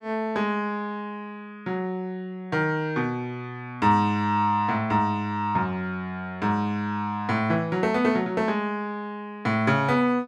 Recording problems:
none

